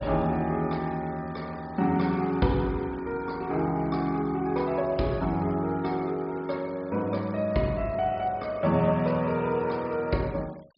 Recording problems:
treble missing; nothing above 5.5 kHz
denoising artefacts; signal-to-artefact ratio 26 dB

